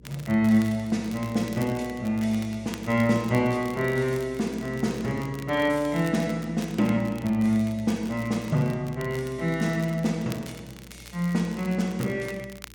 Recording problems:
mains hum; 60 Hz, harmonics up to 480 Hz, SNR 23 dB
crackling; vinyl, SNR 21 dB

